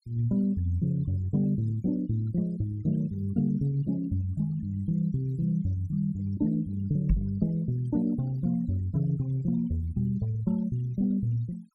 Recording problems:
noise reduction artefacts; signal-to-artefact ratio 27 dB
microphone thump; at 7 s; peak +6 dB vs average level

